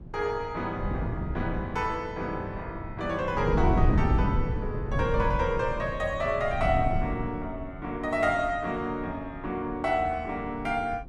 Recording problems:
wind on the microphone; below 190 Hz, SNR 2 dB

